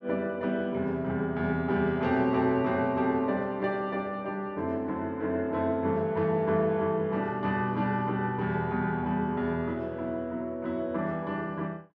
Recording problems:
none

